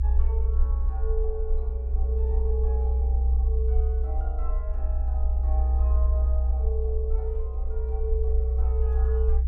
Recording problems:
rumble; below 64 Hz, strongest tone 62 Hz, SNR -12 dB

